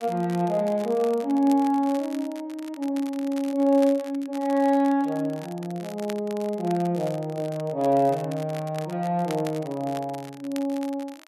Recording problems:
crackle; vinyl, SNR 20 dB

